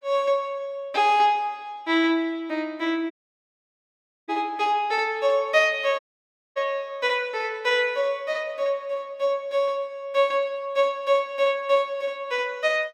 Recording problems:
dropout; at 3 s for 1 s and at 6 s for 0.5 s

